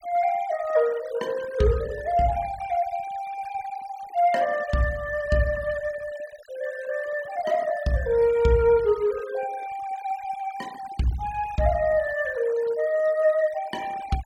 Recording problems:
noise reduction artefacts; signal-to-artefact ratio 21 dB

